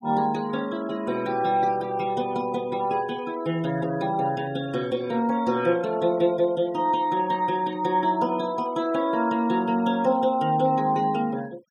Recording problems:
noise reduction artefacts; signal-to-artefact ratio 22 dB

